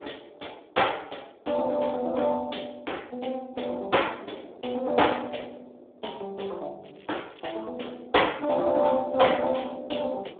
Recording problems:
phone line; 300 Hz to 3.6 kHz, Speex
wind on the microphone; below 630 Hz, SNR 22 dB
crackle; at 7 s; loose cable, SNR 28 dB

